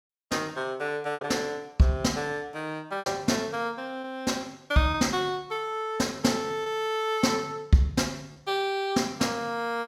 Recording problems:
lost packets; 3% of the sound replaced, filled with repeated pitch periods

